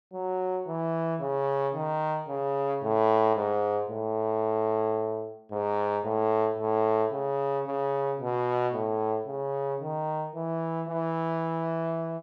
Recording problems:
none

